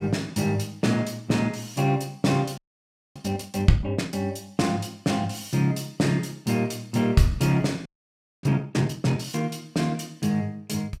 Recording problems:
frozen audio; at 2.5 s for 0.5 s and at 8 s for 0.5 s

